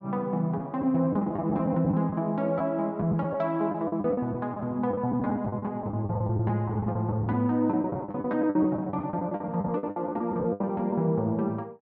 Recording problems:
lost packets; 14% of the sound replaced, filled with the last packet

